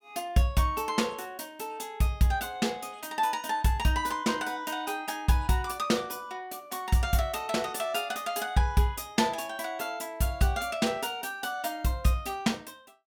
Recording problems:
none

